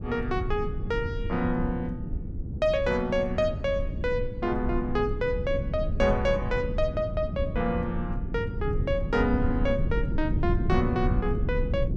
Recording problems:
rumble; below 130 Hz, SNR 3 dB

